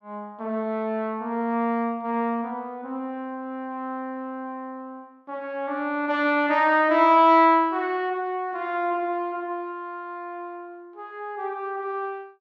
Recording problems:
none

